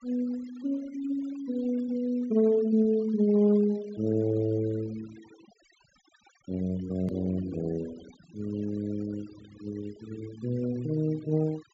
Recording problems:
treble cut off; nothing above 8 kHz
noise reduction artefacts; signal-to-artefact ratio 23 dB
hard cut with a click; at 7 s

